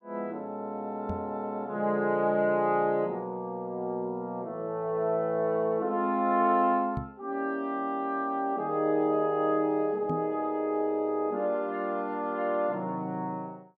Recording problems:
microphone bump; at 1 s, at 7 s and at 10 s; peak -2 dB vs average level

